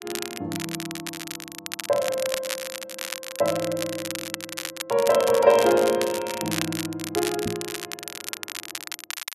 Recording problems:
crackling; vinyl, SNR 8 dB
knock on the microphone; at 7.5 s; peak -2 dB vs average level

